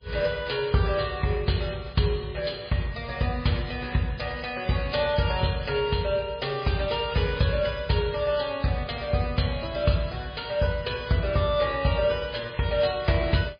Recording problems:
lossy codec; MP3, log-spectral distance 6 dB, nothing above 4.2 kHz

